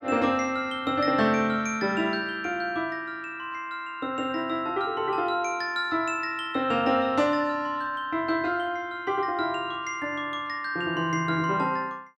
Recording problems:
none

